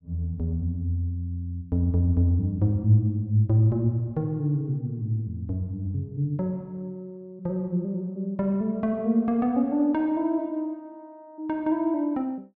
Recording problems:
none

